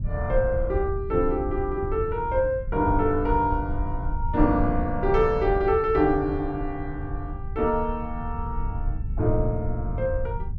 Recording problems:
rumble; below 82 Hz, SNR 7 dB

